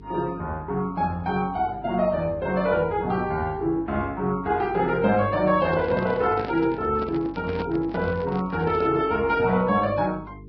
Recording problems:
lossy codec; Vorbis, log-spectral distance 2 dB
electrical hum; 50 Hz, harmonics up to 450 Hz, SNR 20 dB
handling noise; from 5.5 to 9 s; peak -4 dB vs average level

